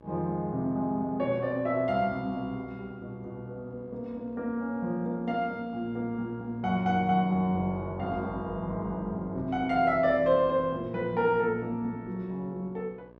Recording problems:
hum; 60 Hz, harmonics up to 1.7 kHz, SNR 25 dB

